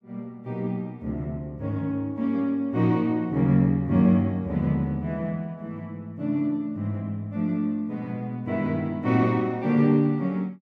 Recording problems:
none

